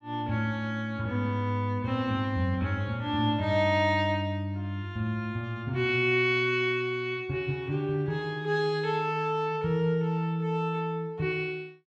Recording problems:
none

